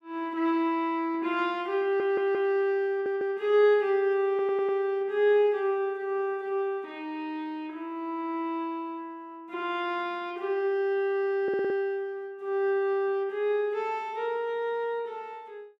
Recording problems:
audio stuttering; 4 times, first at 2 s

